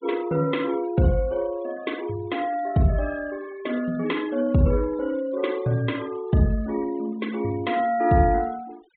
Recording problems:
treble missing; nothing above 4 kHz
denoising artefacts; signal-to-artefact ratio 22 dB

